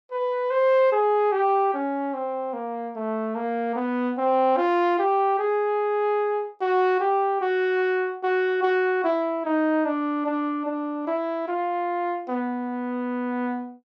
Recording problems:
none

